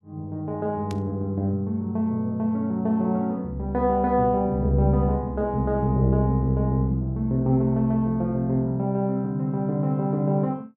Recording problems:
burst of static; at 1 s; peak -13 dB vs average level

